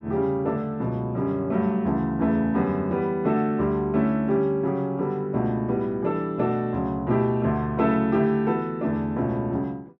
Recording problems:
none

